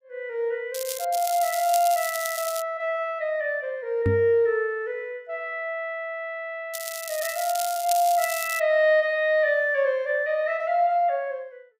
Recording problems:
crackling; at 0.5 s, from 1 to 2.5 s and from 6.5 to 8.5 s; loose cable, SNR 8 dB
knock on the microphone; at 4 s; peak +3 dB vs average level

